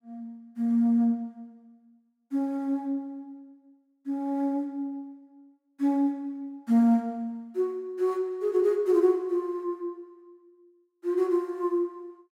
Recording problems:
none

